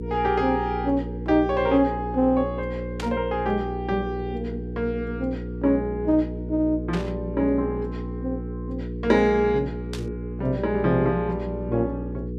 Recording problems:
hum; 60 Hz, harmonics up to 480 Hz, SNR 8 dB
burst of static; at 3 s, at 7 s and at 10 s; peak -6 dB vs average level

